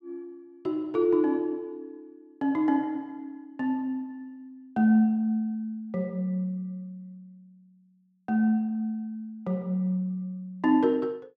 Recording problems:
none

